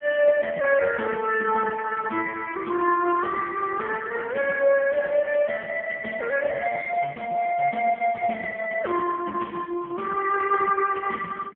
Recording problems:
telephone audio; 240 Hz to 2.9 kHz, AMR-NB

